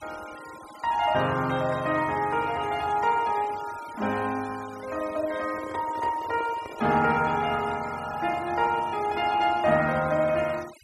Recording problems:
noise reduction artefacts; signal-to-artefact ratio 19 dB
handling noise; from 5.5 to 7 s; peak -7 dB vs average level

